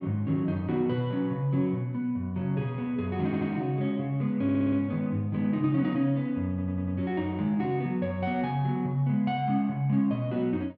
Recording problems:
audio stuttering; at 3.5 s, at 4.5 s and at 6.5 s

